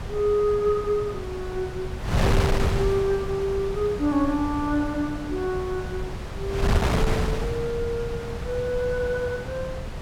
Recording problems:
electrical hum; 60 Hz, harmonics up to 780 Hz, SNR 23 dB
wind on the microphone; below 450 Hz, SNR 2 dB

